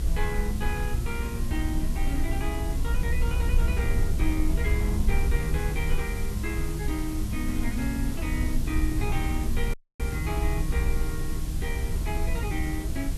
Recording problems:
background hiss; slope +1 dB per octave, SNR 9 dB
rumble; below 66 Hz, strongest tone 22 Hz, SNR -4 dB
dropout; at 9.5 s

